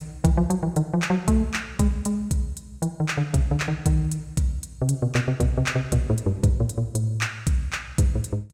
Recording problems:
none

